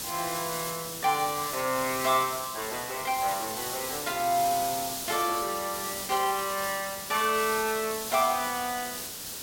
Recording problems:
background hiss; SNR 5 dB

